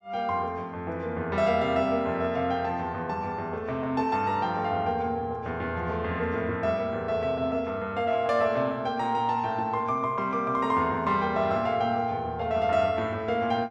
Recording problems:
none

